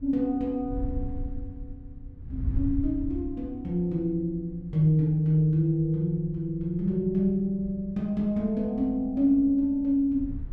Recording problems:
wind on the microphone; below 92 Hz, SNR 13 dB

